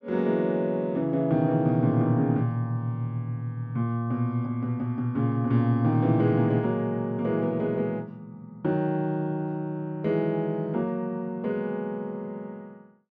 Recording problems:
none

